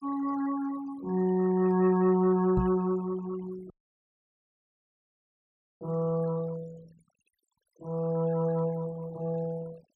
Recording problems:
noise reduction artefacts; signal-to-artefact ratio 21 dB
knock on the microphone; at 2.5 s; peak +2 dB vs average level
audio cutting out; at 3.5 s for 2 s

